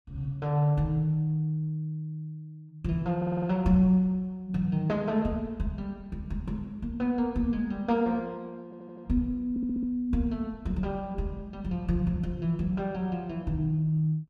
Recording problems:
stutter; at 3 s, at 8.5 s and at 9.5 s

